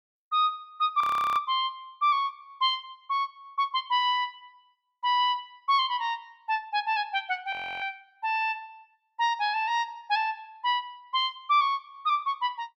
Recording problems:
frozen audio; at 1 s and at 7.5 s

